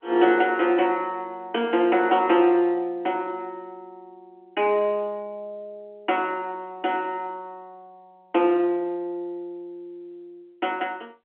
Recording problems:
phone line; 260 Hz to 3.5 kHz, G.711

